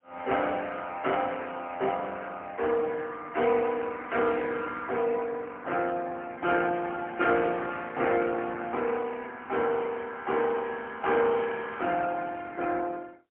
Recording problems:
phone line; 280 Hz to 3.2 kHz, AMR-NB, then MP3

